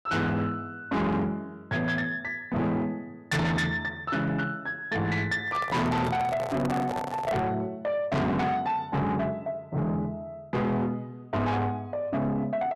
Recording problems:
distorted audio; soft clipping, signal-to-distortion ratio 6 dB
microphone handling noise; from 5.5 to 7.5 s; peak -1 dB vs average level

